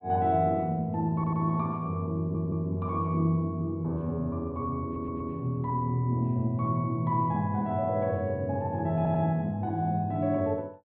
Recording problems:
low-pass filter; nothing above 4.1 kHz
audio stuttering; 4 times, first at 1 s

